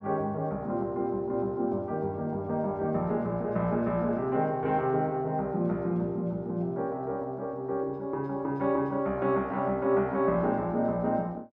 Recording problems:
none

